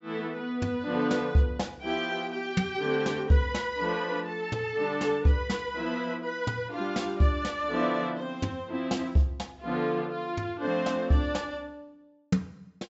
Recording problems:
treble missing; nothing above 7.6 kHz

